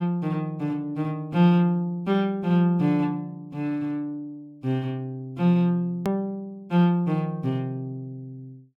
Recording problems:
click at an edit; at 6 s

